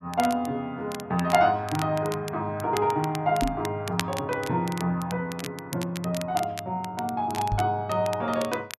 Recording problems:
crackling; vinyl, SNR 13 dB
knock on the microphone; at 3.5 s and at 7.5 s; peak +3 dB vs average level

